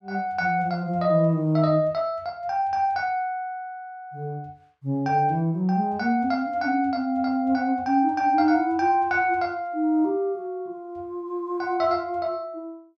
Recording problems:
none

